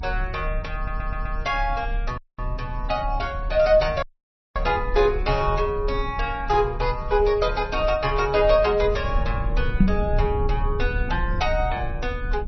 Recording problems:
codec artefacts; MP3, log-spectral distance 2 dB, nothing above 5.8 kHz
low-frequency rumble; below 62 Hz, strongest tone 34 Hz, SNR 6 dB
stutter; at 1 s
dropout; at 2 s and at 4 s for 0.5 s
microphone thump; at 10 s; peak +9 dB vs average level

